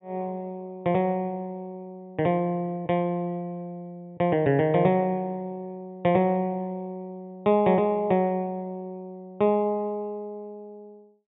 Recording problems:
low-pass filter; nothing above 4 kHz

